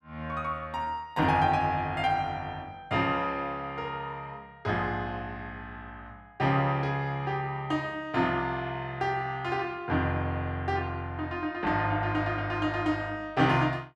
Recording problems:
none

